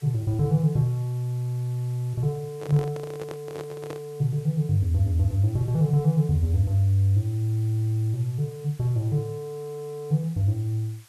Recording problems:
background hiss; slope +2 dB per octave, SNR 27 dB
handling noise; from 2.5 to 4 s; peak -7 dB vs average level

